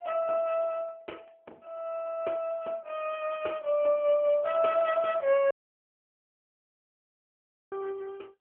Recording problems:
phone line; 300 Hz to 3.2 kHz, AMR-NB
dropout; at 5.5 s for 2 s

